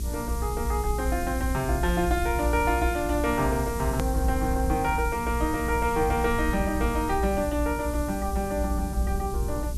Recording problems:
electrical hum; 60 Hz, harmonics up to 420 Hz, SNR 10 dB
hiss; slope +6 dB per octave, SNR 14 dB
low-frequency rumble; below 68 Hz, strongest tone 58 Hz, SNR 5 dB
hard cut with a click; at 4 s

